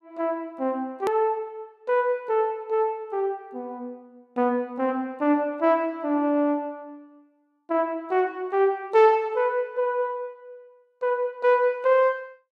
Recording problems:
edit click; at 1 s

